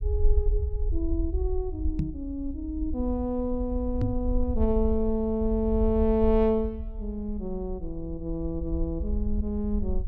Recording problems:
rumble; below 60 Hz, SNR 4 dB
knock on the microphone; at 2 s and at 4 s; peak +5 dB vs average level

